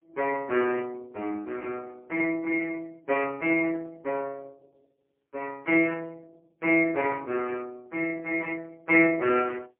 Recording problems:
telephone audio; 240 Hz to 2.8 kHz, AMR-NB, then MP3

